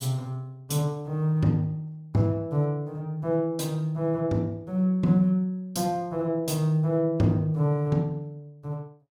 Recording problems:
none

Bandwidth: 16.5 kHz